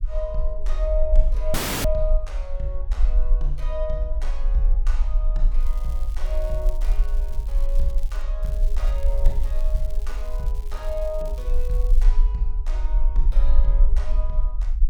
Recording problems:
low-frequency rumble; below 40 Hz, strongest tone 20 Hz, SNR -8 dB
dropout; at 1.5 s
crackling; from 5.5 to 8 s and from 8.5 to 12 s; loose cable, SNR 17 dB

